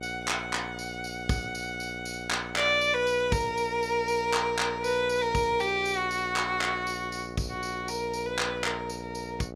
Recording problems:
hum; 60 Hz, harmonics up to 1.4 kHz, SNR 12 dB

